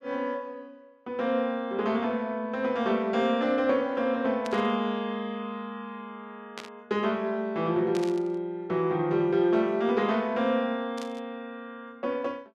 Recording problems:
static burst; 4 times, first at 4.5 s; peak -7 dB vs average level

